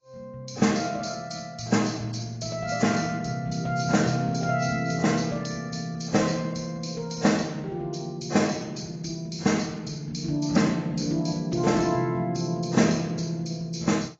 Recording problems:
codec artefacts; AAC, log-spectral distance 5 dB

